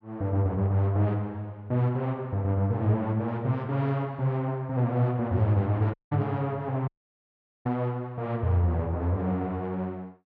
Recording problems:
audio cutting out; at 6 s and at 7 s for 1 s

